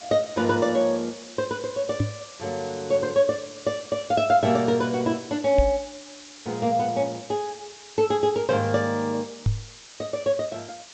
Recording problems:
low-pass filter; nothing above 8 kHz
hiss; slope +2 dB per octave, SNR 18 dB
knock on the microphone; at 2 s, at 5.5 s and at 9.5 s; peak +5 dB vs average level

